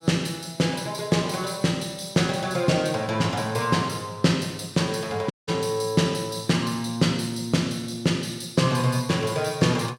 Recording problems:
dropout; at 5.5 s

